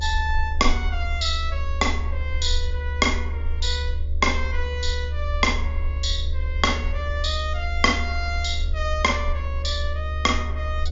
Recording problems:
low-pass filter; nothing above 7.2 kHz
electrical hum; 50 Hz, harmonics up to 600 Hz, SNR 22 dB
rumble; below 74 Hz, SNR 2 dB

